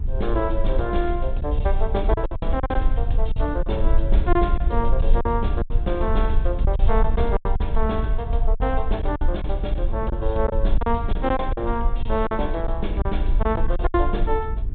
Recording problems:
low-pass filter; nothing above 4 kHz
mains hum; 60 Hz, harmonics up to 420 Hz, SNR 20 dB
low-frequency rumble; below 54 Hz, SNR -1 dB
lost packets; 9% of the sound replaced, filled with silence

